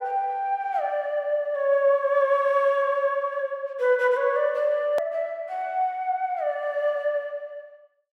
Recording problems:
click at an edit; at 5 s

